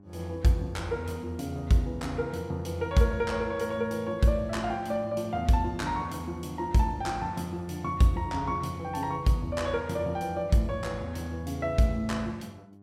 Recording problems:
hum; 50 Hz, harmonics up to 1.1 kHz, SNR 25 dB

